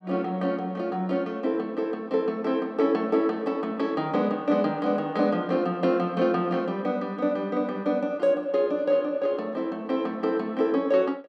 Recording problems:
none

